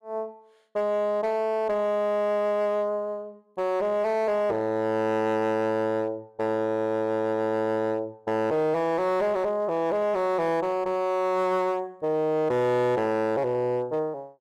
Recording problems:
distortion; hard clipping, signal-to-distortion ratio 11 dB

